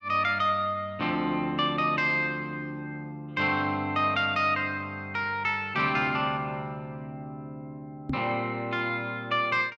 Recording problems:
microphone thump; at 8 s; peak 0 dB vs average level

